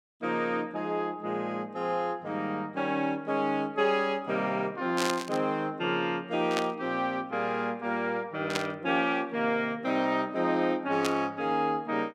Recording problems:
static burst; 4 times, first at 5 s; peak +3 dB vs average level

